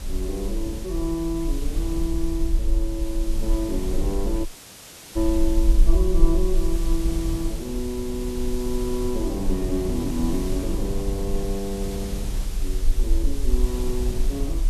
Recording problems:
background hiss; slope -1 dB per octave, SNR 11 dB
low-frequency rumble; below 44 Hz, strongest tone 22 Hz, SNR 0 dB
wind on the microphone; below 190 Hz, SNR 7 dB
audio cutting out; at 4.5 s for 0.5 s

